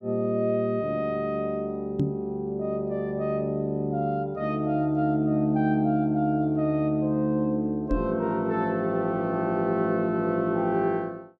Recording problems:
knock on the microphone; at 2 s and at 8 s; peak +3 dB vs average level

